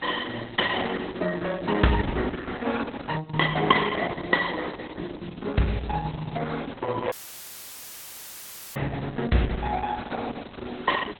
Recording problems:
lossy codec; Opus, log-spectral distance 8 dB
hiss; SNR 19 dB
dropout; at 7 s for 1.5 s; filled with static

